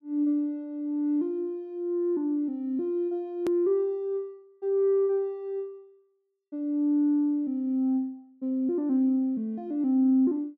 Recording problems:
hard cut with a click; at 3.5 s

